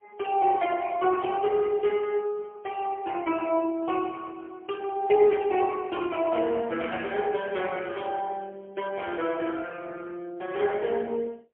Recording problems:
telephone audio; 240 Hz to 3.5 kHz, AMR-NB, then MP3

